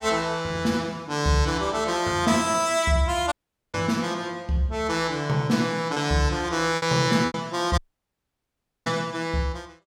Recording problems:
packet loss; 2% of the sound replaced, filled with repeated pitch periods
dropout; at 3.5 s and at 8 s for 1 s

